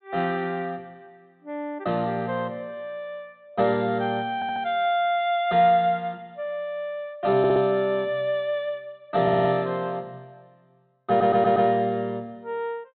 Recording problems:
treble cut off; nothing above 4 kHz
stutter; 4 times, first at 4.5 s

